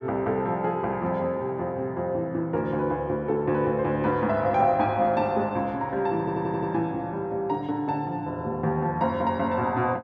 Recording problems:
stutter; at 6 s

